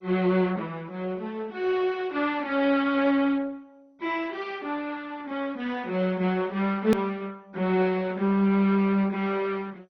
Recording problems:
lossy compression; MP2, log-spectral distance 3 dB, nothing above 17.1 kHz
edit click; at 7 s

